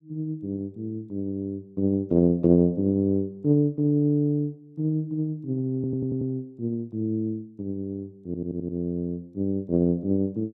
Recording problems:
audio stuttering; at 6 s and at 8.5 s

